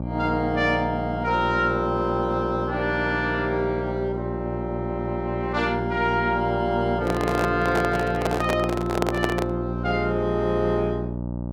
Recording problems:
hum; 60 Hz, harmonics up to 960 Hz, SNR 6 dB
microphone handling noise; from 7 to 9.5 s; peak +4 dB vs average level

